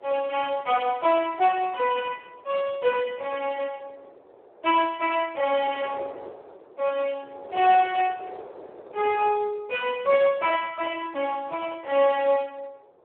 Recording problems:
telephone audio; 340 Hz to 3.3 kHz, Speex
wind on the microphone; below 690 Hz, SNR 21 dB

